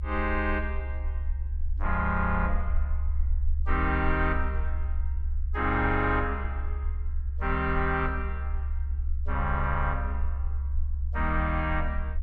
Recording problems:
rumble; below 70 Hz, SNR 2 dB

